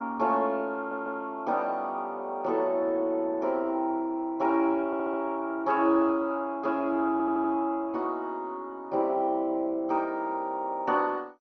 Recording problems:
lossy compression; MP2, log-spectral distance 2 dB, nothing above 6 kHz
audio stuttering; at 1 s, at 5 s and at 7 s

